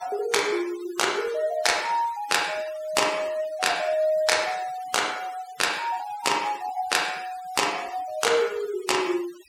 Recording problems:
noise reduction artefacts; signal-to-artefact ratio 17 dB

